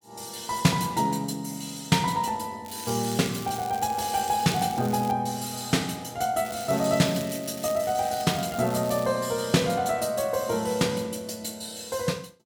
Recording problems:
crackling; from 2.5 to 5 s and from 6.5 to 9 s; loose cable, SNR 15 dB

